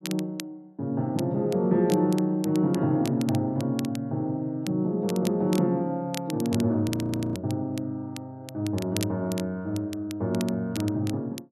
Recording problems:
crackling; vinyl, SNR 15 dB
audio freezing; at 7 s

